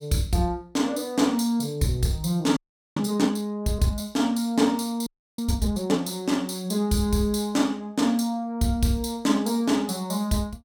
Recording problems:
frozen audio; at 2.5 s and at 5 s

